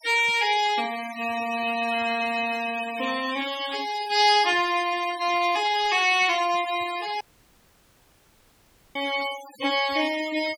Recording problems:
denoising artefacts; signal-to-artefact ratio 14 dB
audio cutting out; at 7 s for 1.5 s

